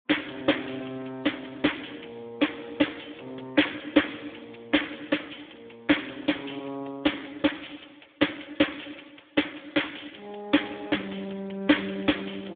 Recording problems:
phone line; 220 Hz to 3.5 kHz, Speex

